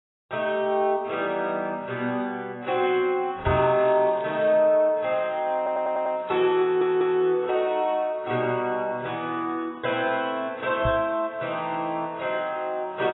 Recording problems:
lossy codec; AAC, log-spectral distance 2 dB, nothing above 3.2 kHz
microphone thump; at 3.5 s and at 11 s; peak 0 dB vs average level
crackle; at 3.5 s; loose cable, SNR 27 dB
stutter; at 5.5 s and at 6.5 s

